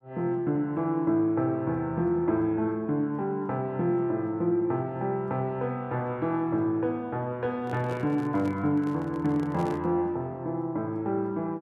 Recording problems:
microphone handling noise; from 7.5 to 10 s; peak -8 dB vs average level

